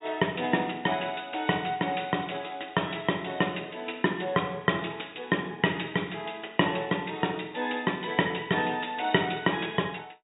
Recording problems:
low-pass filter; nothing above 4 kHz

